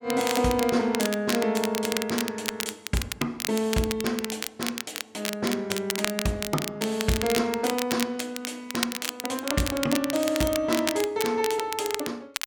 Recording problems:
crackling; vinyl, SNR 5 dB

